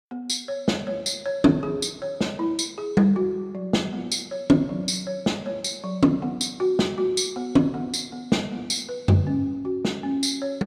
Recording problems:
none

